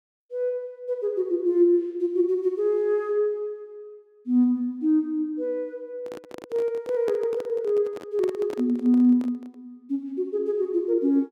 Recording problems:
microphone handling noise; from 6 to 9.5 s; peak -6 dB vs average level

